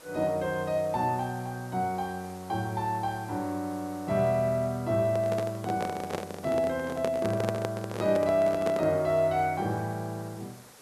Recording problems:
background hiss; slope -4 dB per octave, SNR 21 dB
handling noise; from 5 to 9 s; peak +1 dB vs average level

